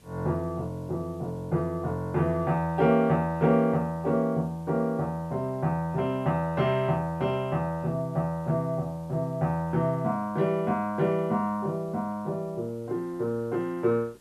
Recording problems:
hiss; SNR 29 dB

